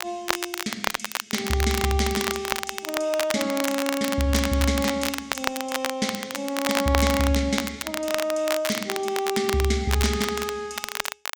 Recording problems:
crackle; vinyl, SNR 4 dB

